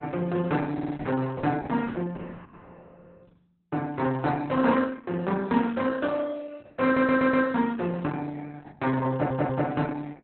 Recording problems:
codec artefacts; Opus, log-spectral distance 4 dB, nothing above 4 kHz
stutter; at 0.5 s, at 7 s and at 9 s

